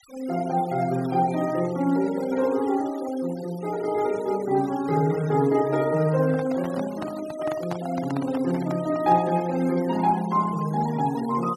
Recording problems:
noise reduction artefacts; signal-to-artefact ratio 20 dB
microphone handling noise; from 6 to 9.5 s; peak -3 dB vs average level

